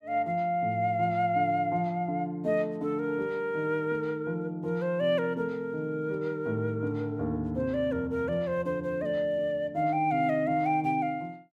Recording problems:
none

